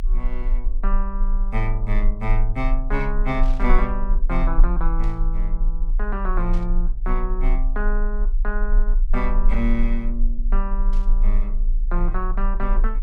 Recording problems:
rumble; below 30 Hz, strongest tone 28 Hz, SNR -5 dB
burst of static; 4 times, first at 3.5 s; peak -12 dB vs average level

